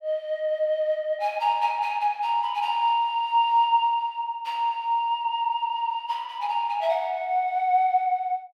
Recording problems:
none

